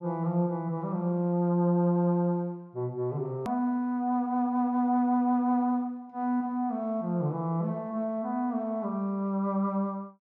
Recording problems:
hard cut with a click; at 3.5 s

